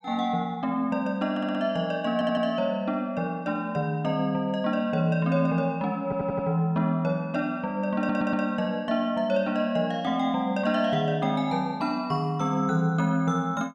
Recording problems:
stutter; 4 times, first at 1.5 s

